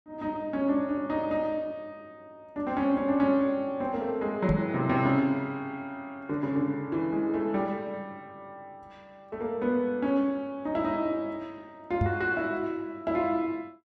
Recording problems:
microphone thump; at 4.5 s and at 12 s; peak +5 dB vs average level

